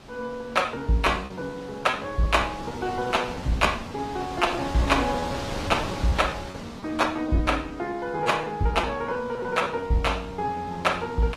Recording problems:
lossy codec; AAC, log-spectral distance 3 dB, nothing above 15.5 kHz
wind noise; below 2 kHz, SNR 12 dB
packet loss; 14% of the sound replaced, filled with repeated pitch periods

